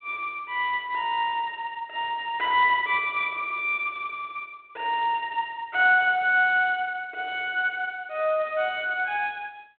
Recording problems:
telephone audio; 300 Hz to 3.5 kHz, G.726

